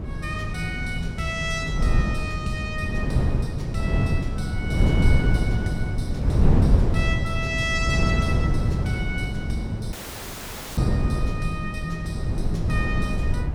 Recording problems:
wind noise; below 160 Hz, SNR -5 dB
audio cutting out; at 10 s for 1 s

